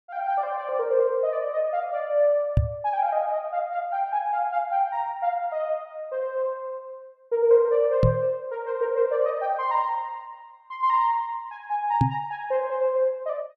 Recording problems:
microphone bump; at 2.5 s, at 8 s and at 12 s; peak +8 dB vs average level

